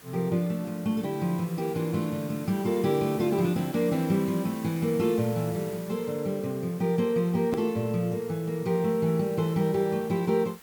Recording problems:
background hiss; slope -2 dB per octave, SNR 19 dB
click at an edit; at 7.5 s

